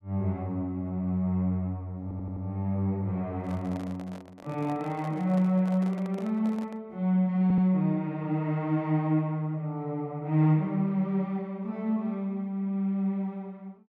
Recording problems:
audio stuttering; at 2 s and at 7.5 s
microphone handling noise; from 3.5 to 7 s; peak -11 dB vs average level

